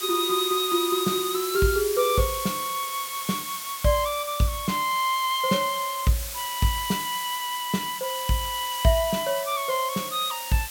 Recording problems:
hiss; slope +2 dB per octave, SNR 7 dB

